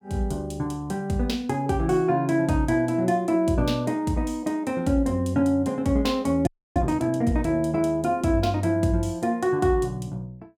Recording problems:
audio freezing; at 6.5 s

